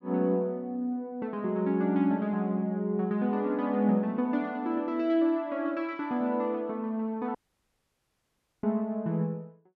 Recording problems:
dropout; at 7.5 s for 1.5 s

